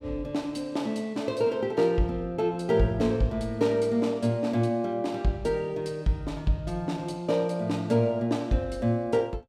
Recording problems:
none

